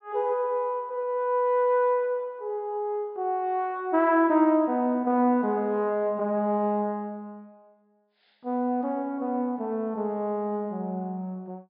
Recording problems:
low-pass filter; nothing above 5.5 kHz

